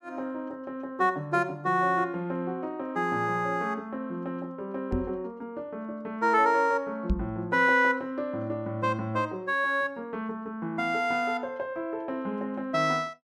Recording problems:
microphone bump; at 5 s and at 7 s; peak +5 dB vs average level

